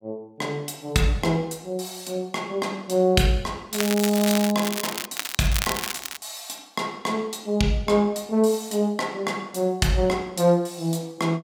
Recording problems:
crackling; from 3.5 to 5 s and from 5 to 6 s; loose cable, SNR 4 dB

